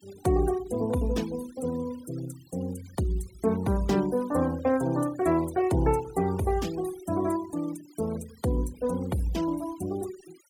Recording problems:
denoising artefacts; signal-to-artefact ratio 19 dB

